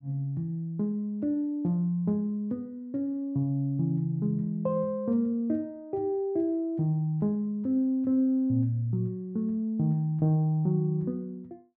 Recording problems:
none

